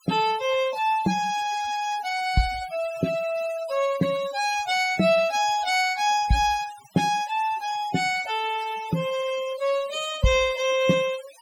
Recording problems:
noise reduction artefacts; signal-to-artefact ratio 15 dB

